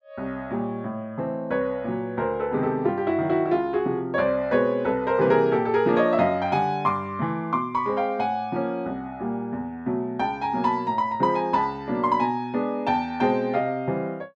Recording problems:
none

